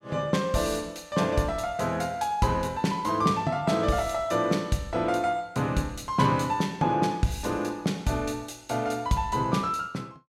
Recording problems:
none

